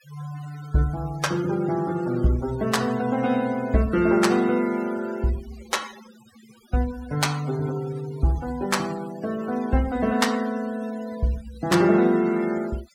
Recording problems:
denoising artefacts; signal-to-artefact ratio 19 dB

